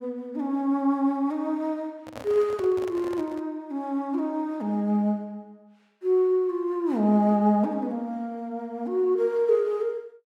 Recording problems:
microphone handling noise; from 2 to 3.5 s; peak -9 dB vs average level

